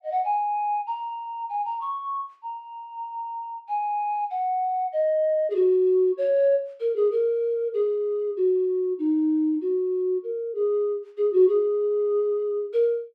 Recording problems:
none

